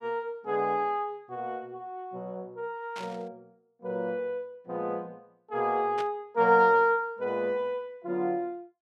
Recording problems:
static burst; at 3 s and at 6 s; peak -8 dB vs average level

